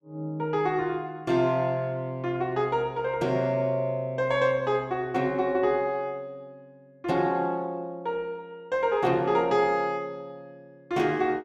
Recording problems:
none

